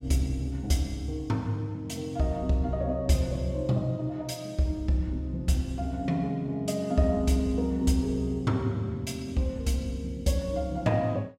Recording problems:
none

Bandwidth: 16 kHz